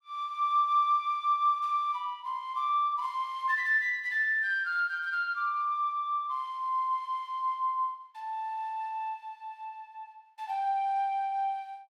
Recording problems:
none

